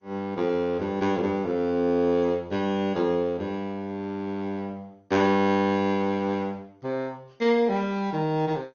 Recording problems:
codec artefacts; Opus, then MP2, log-spectral distance 2 dB, nothing above 6.7 kHz

